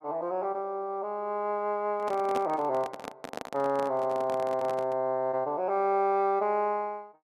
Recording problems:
handling noise; from 2 to 5 s; peak -2 dB vs average level

